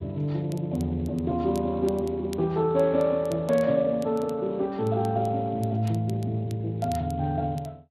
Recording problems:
lossy compression; Speex, log-spectral distance 2 dB
crackle; vinyl, SNR 25 dB

